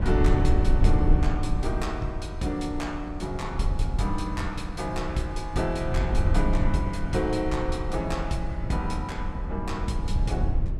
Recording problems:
low-frequency rumble; below 86 Hz, SNR -1 dB

